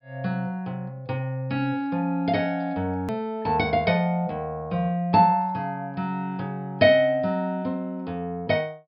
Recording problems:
treble cut off; nothing above 5.5 kHz
hard cut with a click; at 3 s

